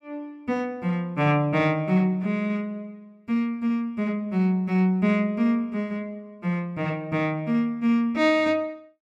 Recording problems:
none

